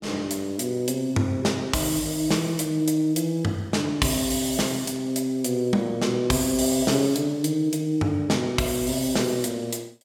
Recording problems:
none

